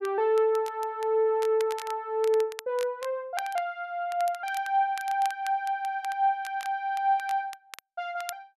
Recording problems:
crackling; vinyl, SNR 18 dB

